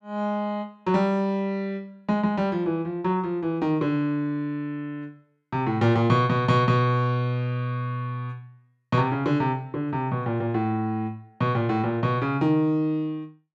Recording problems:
none

